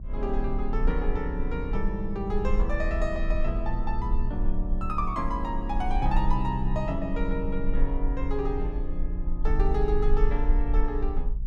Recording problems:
hum; 60 Hz, harmonics up to 420 Hz, SNR 14 dB
rumble; below 42 Hz, strongest tone 18 Hz, SNR 0 dB

